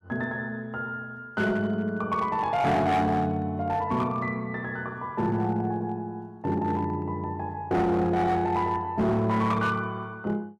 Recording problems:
distortion; hard clipping, uneven, signal-to-distortion ratio 11 dB

